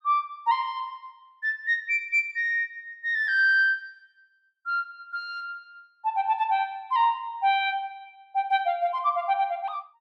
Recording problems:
none

